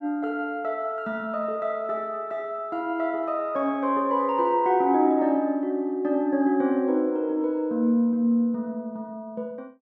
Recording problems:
none

